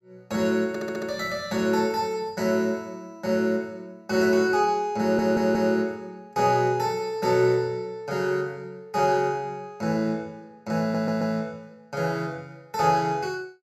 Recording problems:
audio stuttering; at 0.5 s, at 5 s and at 11 s

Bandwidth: 16 kHz